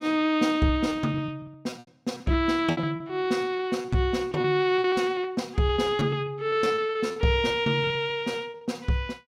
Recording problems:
lost packets; 13% of the sound replaced, filled with repeated pitch periods

